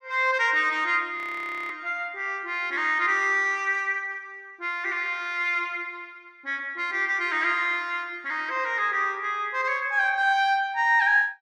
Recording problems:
audio freezing; at 1 s for 0.5 s

